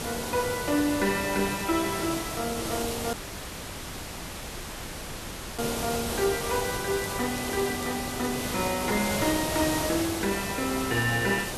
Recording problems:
electrical hum; 50 Hz, harmonics up to 1.8 kHz, SNR 25 dB
background hiss; SNR 3 dB
crackling; at 3 s and from 6.5 to 9.5 s; loose cable, SNR 20 dB
dropout; at 3 s for 2.5 s

